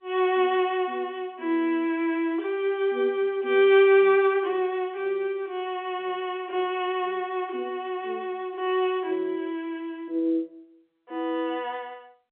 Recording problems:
phone line; 280 Hz to 3.6 kHz, G.711

